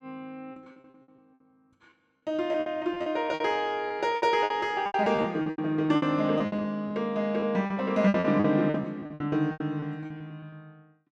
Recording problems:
lost packets; 18% of the sound replaced, filled with repeated pitch periods

